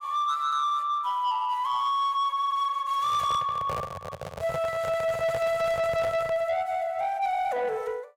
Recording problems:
distortion; soft clipping, signal-to-distortion ratio 11 dB
handling noise; from 3 to 6.5 s; peak -4 dB vs average level

